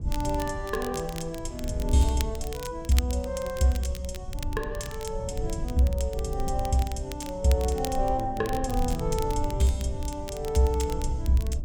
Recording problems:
rumble; below 86 Hz, SNR 8 dB
crackle; vinyl, SNR 15 dB

